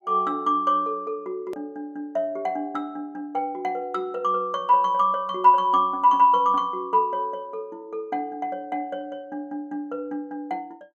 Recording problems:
edit click; at 1.5 s

